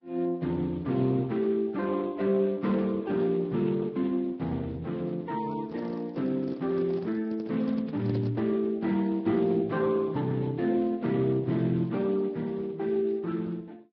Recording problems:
lossy compression; Speex, then Vorbis, log-spectral distance 3 dB, nothing above 11.3 kHz
handling noise; from 5.5 to 8.5 s; peak -10 dB vs average level

